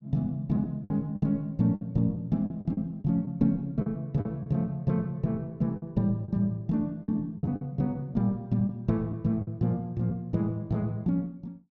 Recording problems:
packet loss; 7% of the sound replaced, filled with the last packet

